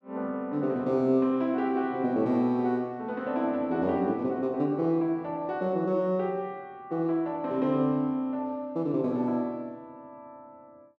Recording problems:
none

